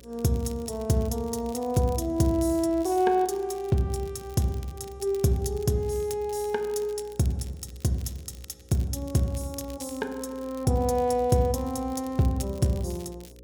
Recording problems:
hum; 60 Hz, harmonics up to 540 Hz, SNR 25 dB
crackle; vinyl, SNR 23 dB

